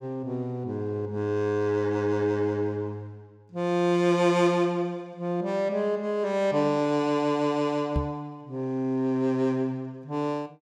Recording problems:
microphone bump; at 8 s; peak +3 dB vs average level

